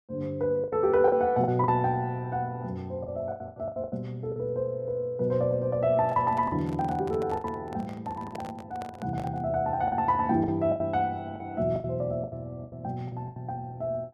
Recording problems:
lost packets; 10% of the sound replaced, filled with the last packet
microphone handling noise; from 6 to 9.5 s; peak -7 dB vs average level

